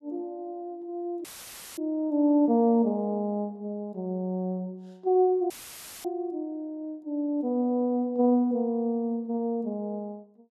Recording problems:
dropout; at 1 s for 0.5 s and at 5.5 s for 0.5 s; filled with static

